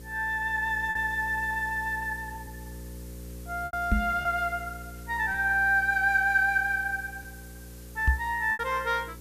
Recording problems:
hum; 60 Hz, harmonics up to 540 Hz, SNR 17 dB
background hiss; slope -1 dB per octave, SNR 23 dB
lost packets; 4% of the sound replaced, filled with repeated pitch periods
microphone bump; at 4 s and at 8 s; peak +5 dB vs average level

